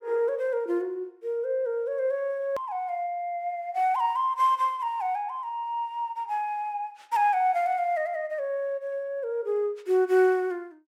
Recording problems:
hard cut with a click; at 2.5 s

